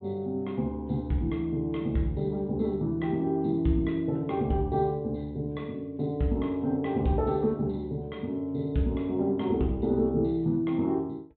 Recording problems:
treble cut off; nothing above 4 kHz

